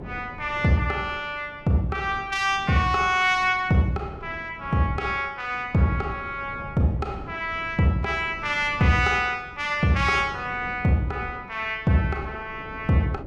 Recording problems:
wind on the microphone; below 350 Hz, SNR 18 dB

